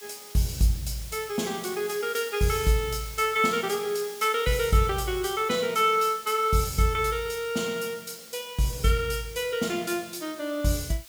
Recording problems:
hiss; slope +3 dB per octave, SNR 17 dB

